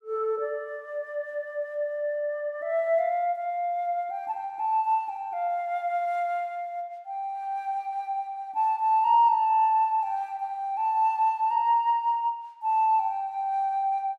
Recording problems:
none

